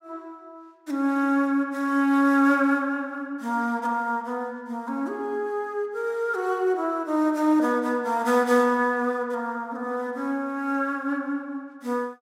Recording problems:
none

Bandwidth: 16 kHz